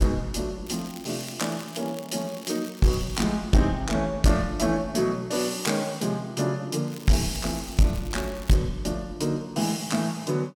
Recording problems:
distorted audio; hard clipping, uneven, signal-to-distortion ratio 10 dB
crackle; from 0.5 to 3 s and from 7 to 8.5 s; loose cable, SNR 18 dB

